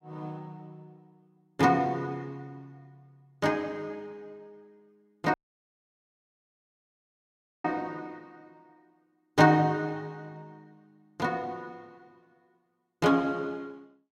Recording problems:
dropout; at 5.5 s for 2.5 s

